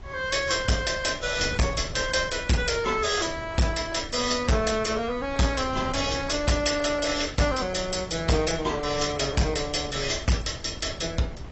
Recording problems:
lossy codec; AAC, log-spectral distance 6 dB, nothing above 7.8 kHz
distorted audio; hard clipping, signal-to-distortion ratio 10 dB
wind on the microphone; below 270 Hz, SNR 15 dB

